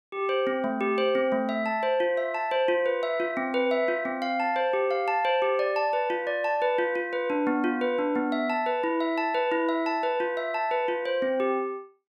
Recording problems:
none

